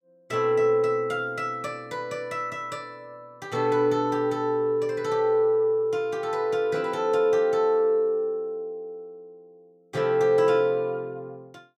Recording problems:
none

